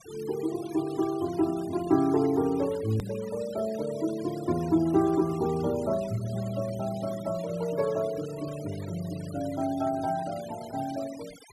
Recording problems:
denoising artefacts; signal-to-artefact ratio 18 dB
click at an edit; at 3 s

